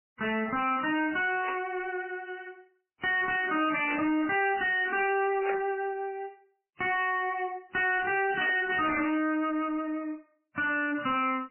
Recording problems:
lossy compression; MP3, then MP3, log-spectral distance 4 dB, nothing above 2.8 kHz
distortion; soft clipping, signal-to-distortion ratio 6 dB
burst of static; 4 times, first at 1.5 s; peak -2 dB vs average level

